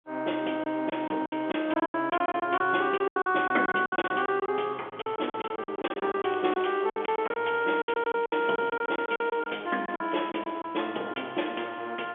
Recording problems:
phone line; 240 Hz to 3.4 kHz, G.711
lost packets; 15% of the sound replaced, filled with silence
crackle; from 6 to 9 s and from 9 to 10 s; loose cable, SNR 23 dB

